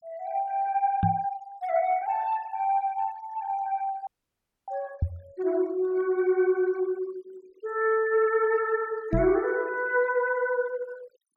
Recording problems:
denoising artefacts; signal-to-artefact ratio 24 dB
microphone bump; at 1 s, at 5 s and at 9 s; peak +5 dB vs average level
dropout; at 4 s for 0.5 s

